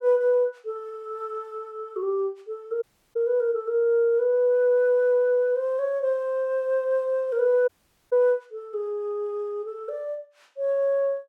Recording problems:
dropout; at 3 s and at 7.5 s

